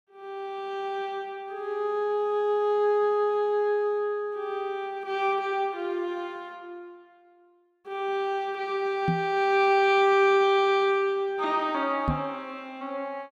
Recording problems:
microphone thump; at 9 s and at 12 s; peak +2 dB vs average level

